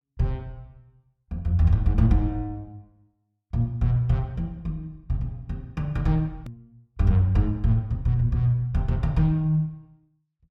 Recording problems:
click at an edit; at 6.5 s

